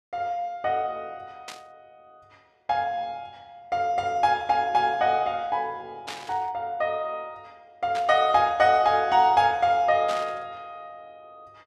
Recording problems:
static burst; 4 times, first at 1.5 s; peak -7 dB vs average level

